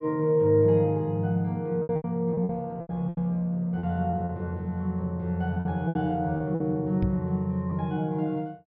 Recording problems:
treble cut off; nothing above 5.5 kHz
packet loss; 8% of the sound replaced, filled with repeated pitch periods
microphone thump; at 7 s; peak +2 dB vs average level

